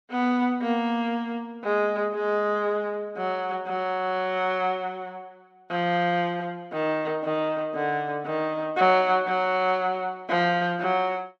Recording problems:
none

